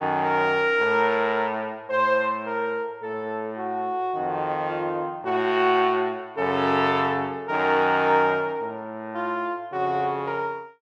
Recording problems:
none

